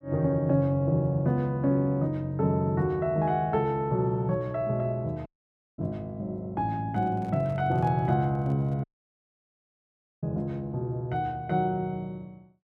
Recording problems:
audio cutting out; at 5.5 s for 0.5 s and at 9 s for 1.5 s
handling noise; from 7 to 9 s; peak -12 dB vs average level

